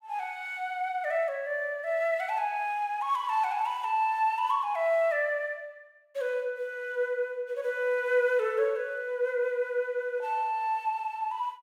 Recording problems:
none

